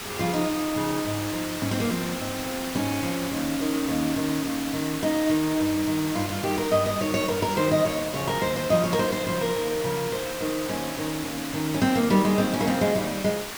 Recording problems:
hiss; SNR 7 dB

